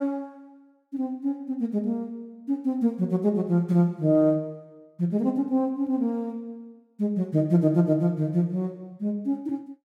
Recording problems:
none

